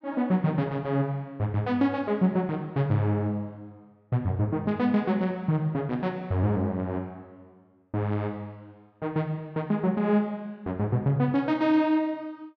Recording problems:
none

